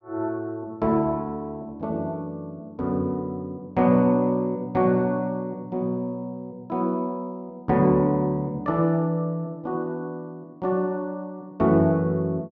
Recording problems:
none

